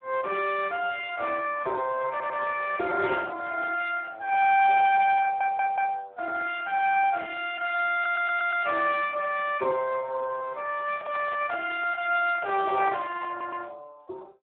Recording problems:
telephone audio; 340 Hz to 3.9 kHz, Speex
audio stuttering; 4 times, first at 2 s
handling noise; from 11 to 14 s; peak -6 dB vs average level

